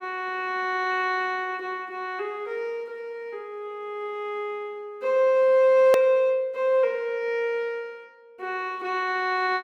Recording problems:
click at an edit; at 6 s

